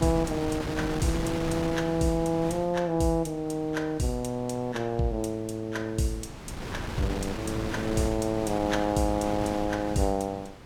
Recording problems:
wind noise; below 1 kHz, SNR 8 dB

